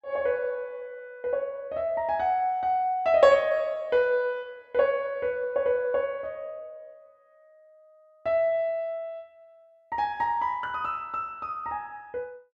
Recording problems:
none

